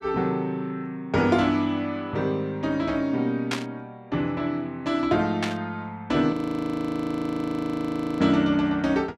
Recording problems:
burst of static; at 3.5 s and at 5.5 s; peak +1 dB vs average level
audio freezing; at 6.5 s for 2 s

